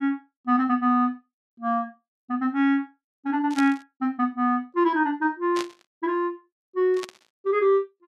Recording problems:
burst of static; at 3.5 s, at 5.5 s and at 7 s; peak -4 dB vs average level

